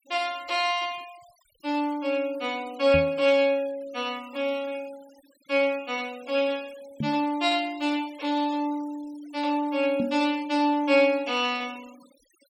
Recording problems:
denoising artefacts; signal-to-artefact ratio 24 dB
knock on the microphone; at 3 s, at 7 s and at 10 s; peak 0 dB vs average level

